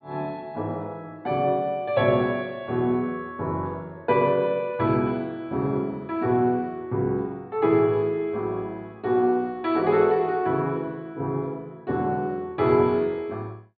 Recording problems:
treble cut off; nothing above 4.6 kHz

